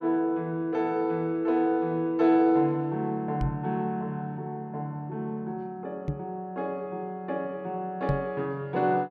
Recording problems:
knock on the microphone; at 3.5 s, at 6 s and at 8 s; peak +4 dB vs average level

